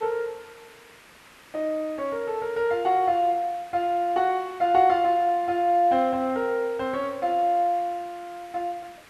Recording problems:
background hiss; SNR 24 dB

